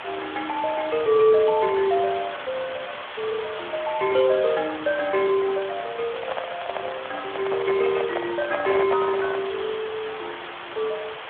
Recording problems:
telephone audio; 340 Hz to 3 kHz, Speex
background hiss; SNR 10 dB
handling noise; from 6 to 9.5 s; peak +1 dB vs average level

